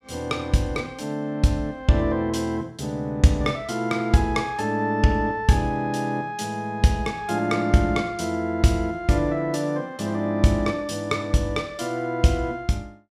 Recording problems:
none

